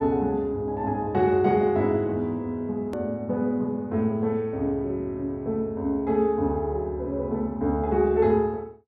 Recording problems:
hard cut with a click; at 3 s

